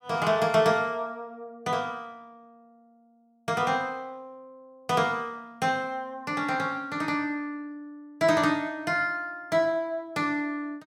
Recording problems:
none

